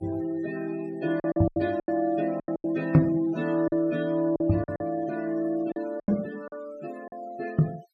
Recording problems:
denoising artefacts; signal-to-artefact ratio 21 dB
packet loss; 10% of the sound replaced, filled with silence

